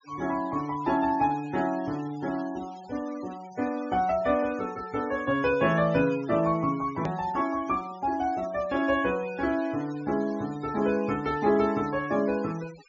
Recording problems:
treble cut off; nothing above 7.1 kHz
denoising artefacts; signal-to-artefact ratio 20 dB
hard cut with a click; at 7 s

